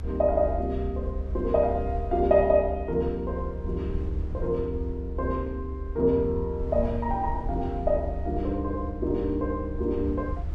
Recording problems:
low-frequency rumble; below 72 Hz, strongest tone 70 Hz, SNR 6 dB

